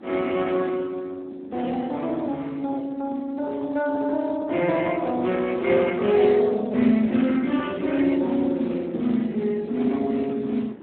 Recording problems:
telephone audio; 170 Hz to 2.8 kHz, Speex
wind on the microphone; below 410 Hz, SNR 20 dB

